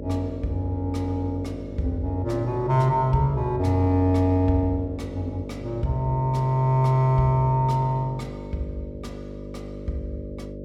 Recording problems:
electrical hum; 50 Hz, harmonics up to 600 Hz, SNR 12 dB

